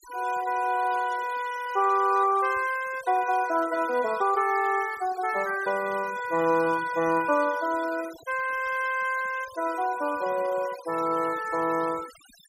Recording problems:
noise reduction artefacts; signal-to-artefact ratio 18 dB

